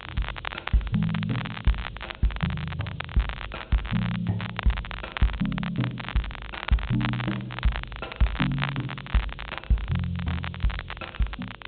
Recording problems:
low-pass filter; nothing above 4 kHz
hum; 50 Hz, harmonics up to 550 Hz, SNR 23 dB
background hiss; SNR 27 dB
crackling; vinyl, SNR 7 dB

